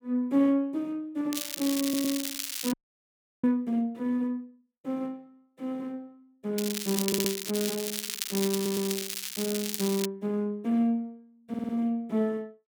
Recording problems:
crackling; from 1.5 to 2.5 s and from 6.5 to 10 s; loose cable, SNR 3 dB
audio stuttering; 4 times, first at 2 s
frozen audio; at 2.5 s for 0.5 s

